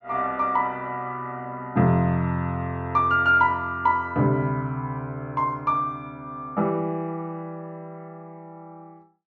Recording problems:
treble cut off; nothing above 8 kHz

